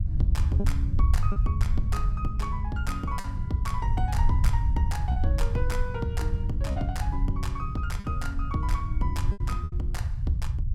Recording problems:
rumble; below 86 Hz, SNR -5 dB
packet loss; 4% of the sound replaced, filled with repeated pitch periods

